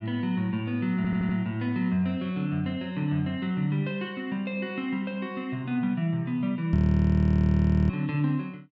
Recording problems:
treble cut off; nothing above 8 kHz
audio stuttering; at 1 s
microphone thump; at 6.5 s; peak +6 dB vs average level
audio freezing; at 7 s for 1 s

